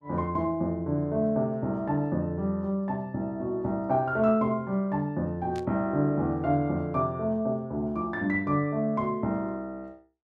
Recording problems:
static burst; at 5.5 s; peak -14 dB vs average level

